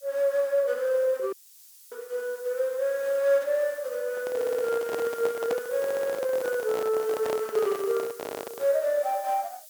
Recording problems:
hiss; slope +6 dB per octave, SNR 19 dB
dropout; at 1.5 s for 0.5 s
handling noise; from 4 to 8.5 s; peak -2 dB vs average level
audio stuttering; at 4.5 s, at 6 s and at 8 s

